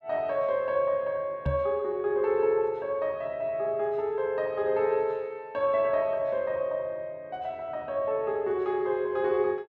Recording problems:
microphone thump; at 1.5 s; peak +2 dB vs average level

